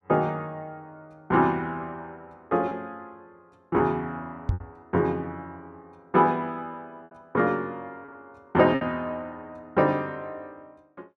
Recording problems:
packet loss; 3% of the sound replaced, filled with repeated pitch periods
microphone bump; at 4.5 s; peak +4 dB vs average level

